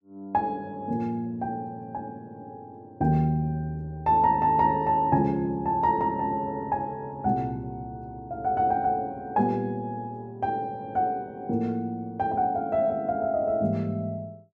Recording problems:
none

